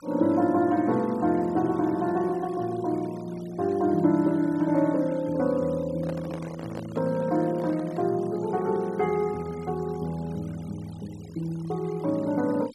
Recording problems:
noise reduction artefacts; signal-to-artefact ratio 24 dB
handling noise; from 6 to 8 s; peak -8 dB vs average level

